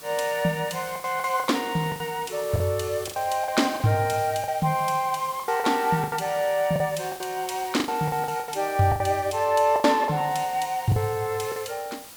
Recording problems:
hiss; slope -1 dB per octave, SNR 16 dB
lost packets; 11% of the sound replaced, filled with the last packet

